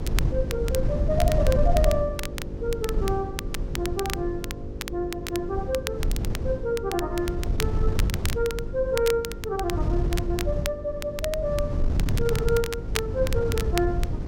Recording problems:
mains hum; 50 Hz, harmonics up to 550 Hz, SNR 11 dB
wind on the microphone; below 110 Hz, SNR 1 dB
crackling; vinyl, SNR 8 dB

